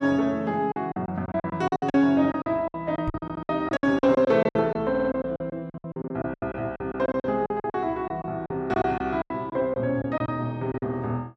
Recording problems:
packet loss; 17% of the sound replaced, filled with silence
knock on the microphone; at 3 s; peak -1 dB vs average level
stutter; at 3 s and at 5 s

